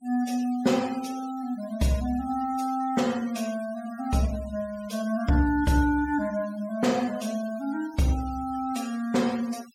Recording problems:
noise reduction artefacts; signal-to-artefact ratio 19 dB

